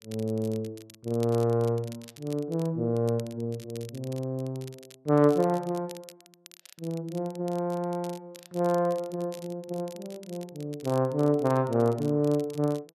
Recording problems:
crackling; vinyl, SNR 22 dB

